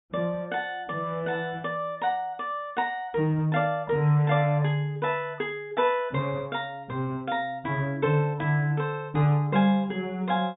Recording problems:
treble cut off; nothing above 4 kHz

